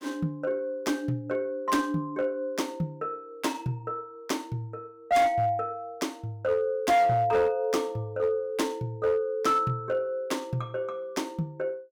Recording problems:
distorted audio; hard clipping, uneven, signal-to-distortion ratio 12 dB

